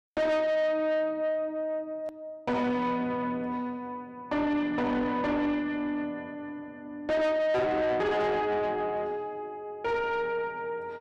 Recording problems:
distorted audio; soft clipping, signal-to-distortion ratio 7 dB
edit click; at 2 s

